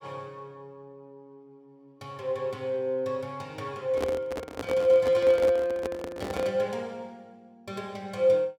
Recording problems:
microphone handling noise; from 4 to 6.5 s; peak -1 dB vs average level

